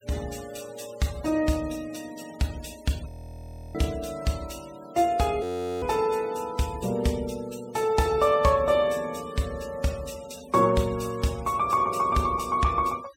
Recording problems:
denoising artefacts; signal-to-artefact ratio 20 dB
frozen audio; at 3 s for 0.5 s and at 5.5 s

